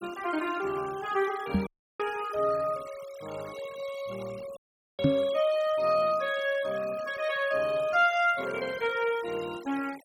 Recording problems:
denoising artefacts; signal-to-artefact ratio 19 dB
microphone bump; at 1.5 s and at 5 s; peak +8 dB vs average level
dropout; at 1.5 s and at 4.5 s

